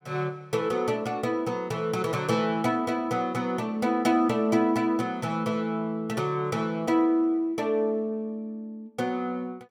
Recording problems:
none

